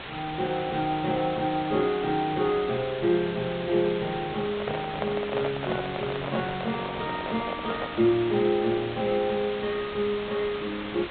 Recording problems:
low-pass filter; nothing above 4 kHz
hiss; SNR 9 dB
handling noise; from 4.5 to 8 s; peak 0 dB vs average level

